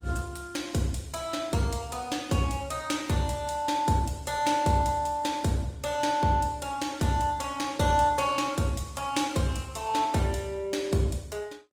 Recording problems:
codec artefacts; Opus, log-spectral distance 4 dB, nothing above 19 kHz

